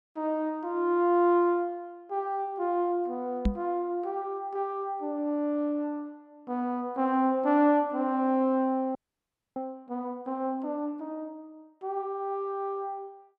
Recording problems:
knock on the microphone; at 3.5 s; peak +6 dB vs average level
frozen audio; at 9 s for 0.5 s

